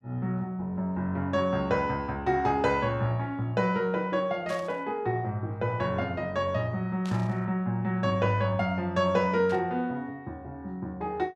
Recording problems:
static burst; at 4.5 s, at 7 s and at 9.5 s; peak -11 dB vs average level

